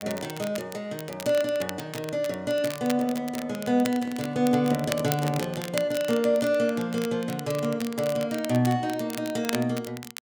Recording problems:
crackling; vinyl, SNR 12 dB
microphone handling noise; from 4 to 5.5 s; peak -9 dB vs average level

